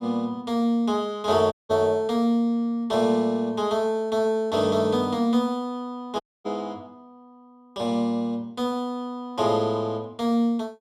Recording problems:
dropout; at 1.5 s and at 6 s

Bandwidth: 13.5 kHz